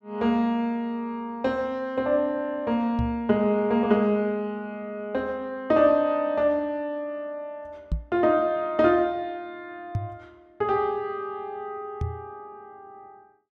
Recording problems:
microphone thump; 4 times, first at 3 s; peak +1 dB vs average level

